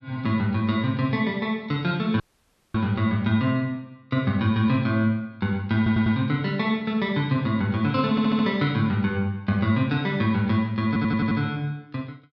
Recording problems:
audio cutting out; at 2 s for 0.5 s
stutter; at 6 s, at 8 s and at 11 s

